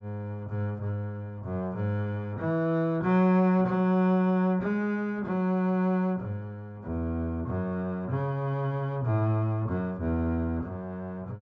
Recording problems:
treble cut off; nothing above 8 kHz

